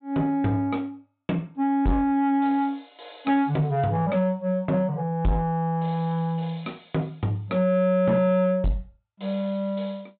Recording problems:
low-pass filter; nothing above 4 kHz
distorted audio; soft clipping, signal-to-distortion ratio 11 dB

